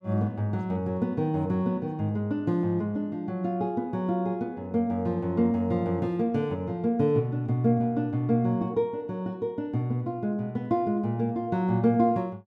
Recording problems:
none

